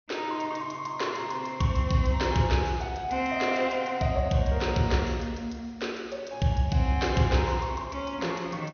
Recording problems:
low-pass filter; nothing above 6.4 kHz

